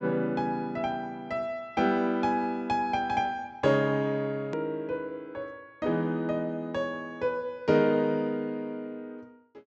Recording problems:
treble missing; nothing above 8 kHz
hard cut with a click; at 4.5 s

